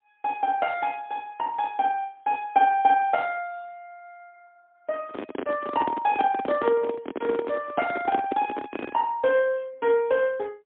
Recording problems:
telephone audio; 220 Hz to 3.5 kHz, AMR-NB, then MP3
microphone handling noise; from 5 to 9 s; peak -1 dB vs average level

